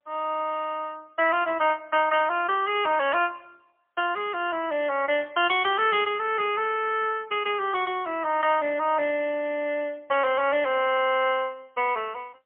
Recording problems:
phone line; 260 Hz to 3.4 kHz, AMR-NB, then MP3

